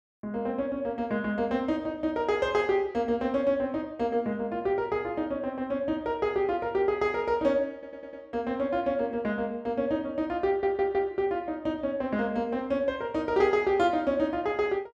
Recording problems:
audio stuttering; at 7.5 s and at 10 s

